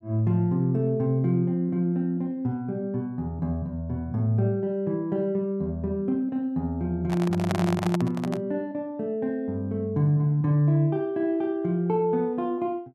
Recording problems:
handling noise; from 7 to 8.5 s; peak +1 dB vs average level

